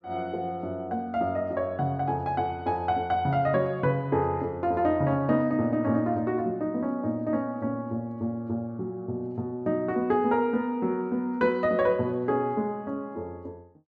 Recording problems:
none

